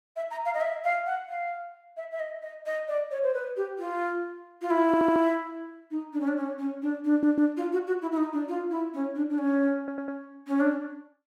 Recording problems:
stutter; at 5 s, at 7 s and at 10 s

